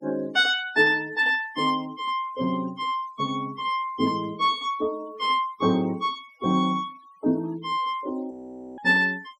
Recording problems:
noise reduction artefacts; signal-to-artefact ratio 24 dB
frozen audio; at 8.5 s

